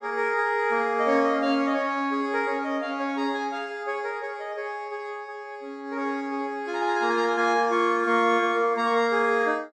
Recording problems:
none

